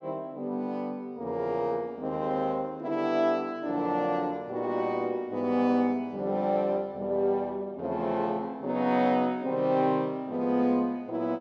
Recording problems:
none

